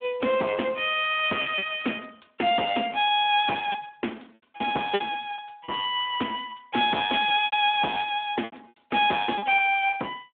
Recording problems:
phone line; 320 Hz to 3.5 kHz, Speex
distortion; hard clipping, signal-to-distortion ratio 13 dB
packet loss; 8% of the sound replaced, filled with repeated pitch periods

